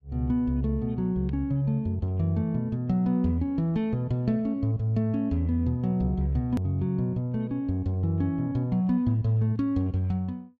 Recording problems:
click at an edit; at 6.5 s

